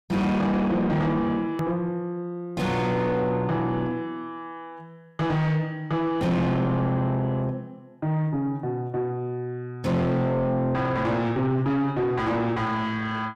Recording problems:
distorted audio; soft clipping, signal-to-distortion ratio 6 dB
edit click; at 1.5 s

